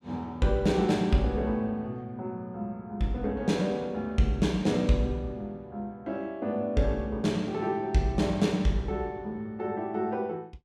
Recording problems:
none

